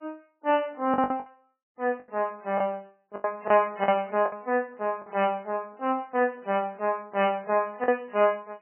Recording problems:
lossy codec; MP3, log-spectral distance 2 dB, nothing above 2.6 kHz
packet loss; 7% of the sound replaced, filled with the last packet

